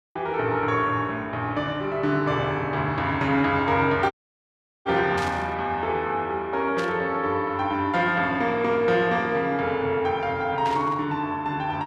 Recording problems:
audio cutting out; at 4 s for 0.5 s
burst of static; at 5 s, at 7 s and at 11 s; peak -7 dB vs average level

